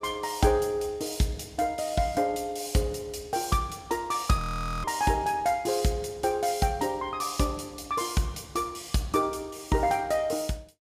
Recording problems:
audio freezing; at 4.5 s

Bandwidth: 15 kHz